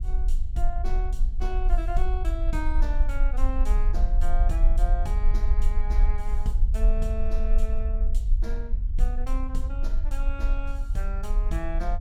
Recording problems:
low-frequency rumble; below 44 Hz, strongest tone 26 Hz, SNR -10 dB

